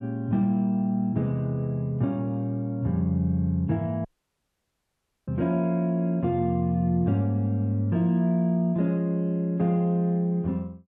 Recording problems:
audio cutting out; at 4 s for 1 s

